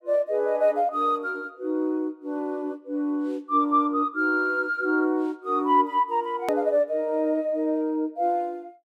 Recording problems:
click at an edit; at 6.5 s

